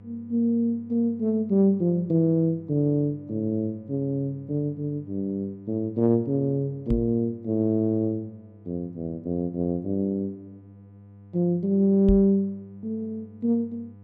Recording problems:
electrical hum; 50 Hz, harmonics up to 1 kHz, SNR 23 dB
microphone bump; at 7 s and at 12 s; peak +3 dB vs average level

